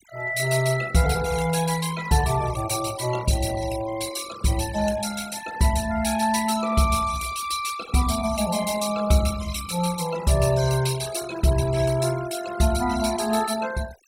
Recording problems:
noise reduction artefacts; signal-to-artefact ratio 13 dB

